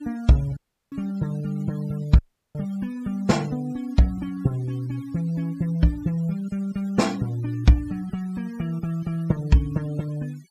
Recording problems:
denoising artefacts; signal-to-artefact ratio 24 dB
dropout; at 0.5 s and at 2 s

